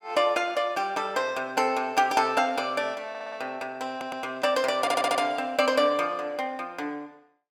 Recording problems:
stutter; at 3 s, at 4 s and at 5 s

